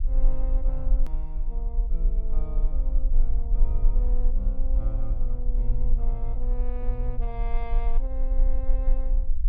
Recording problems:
low-frequency rumble; below 36 Hz, strongest tone 20 Hz, SNR -12 dB
hard cut with a click; at 1 s

